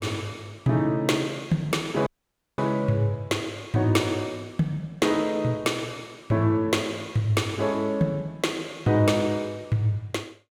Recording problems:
dropout; at 2 s for 0.5 s

